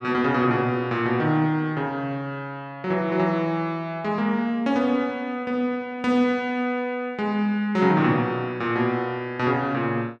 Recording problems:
none

